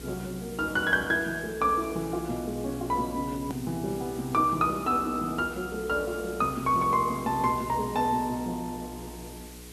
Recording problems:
hum; 60 Hz, harmonics up to 480 Hz, SNR 18 dB
hiss; slope 0 dB per octave, SNR 18 dB
hard cut with a click; at 3.5 s

